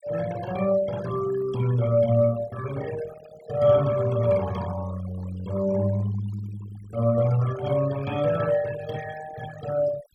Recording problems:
denoising artefacts; signal-to-artefact ratio 17 dB

